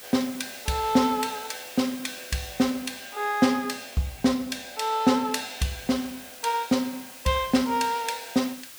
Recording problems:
background hiss; slope +1 dB per octave, SNR 16 dB

